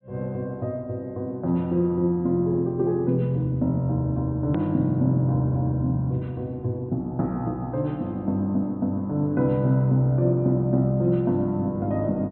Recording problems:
treble cut off; nothing above 4 kHz
click at an edit; at 4.5 s

